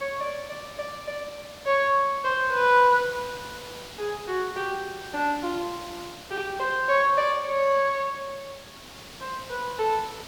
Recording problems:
background hiss; slope -2 dB per octave, SNR 17 dB

